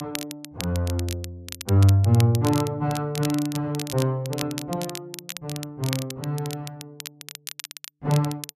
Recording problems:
crackling; vinyl, SNR 12 dB

